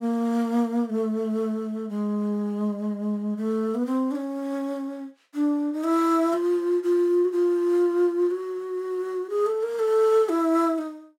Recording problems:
none

